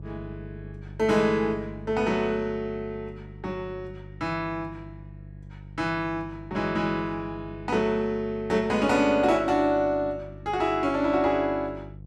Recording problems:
hum; 50 Hz, harmonics up to 500 Hz, SNR 17 dB

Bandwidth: 13.5 kHz